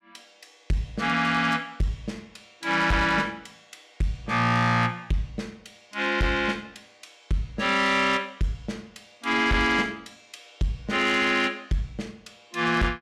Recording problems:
distorted audio; soft clipping, signal-to-distortion ratio 11 dB

